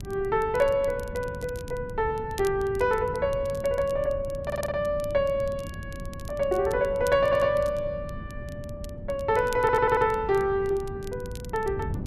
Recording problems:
wind on the microphone; below 180 Hz, SNR 13 dB
crackle; vinyl, SNR 23 dB
stutter; at 4.5 s, at 7 s and at 9.5 s

